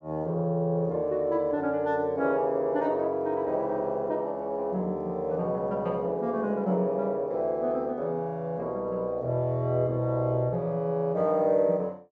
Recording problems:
treble missing; nothing above 8 kHz

